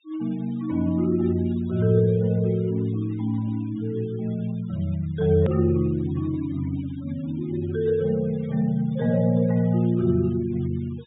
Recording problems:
treble cut off; nothing above 4 kHz
denoising artefacts; signal-to-artefact ratio 27 dB
edit click; at 5.5 s

